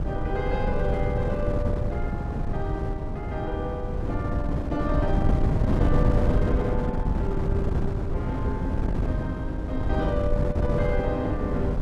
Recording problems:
wind on the microphone; below 180 Hz, SNR -4 dB

